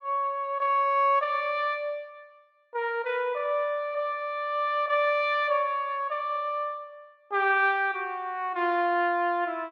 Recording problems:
none

